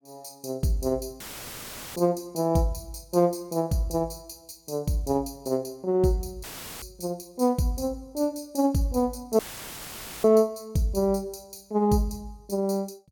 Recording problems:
audio cutting out; at 1 s for 1 s, at 6.5 s and at 9.5 s for 1 s; filled with static

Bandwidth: 18 kHz